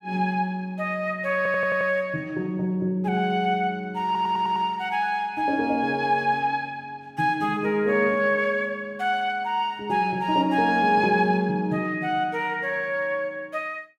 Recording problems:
stutter; at 1.5 s and at 4 s

